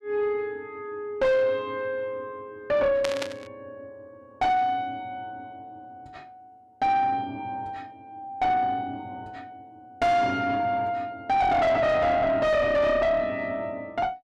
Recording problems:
distorted audio; soft clipping, signal-to-distortion ratio 6 dB
burst of static; at 3 s; peak -1 dB vs average level

